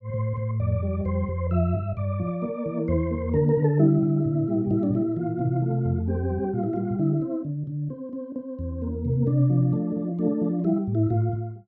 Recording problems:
none

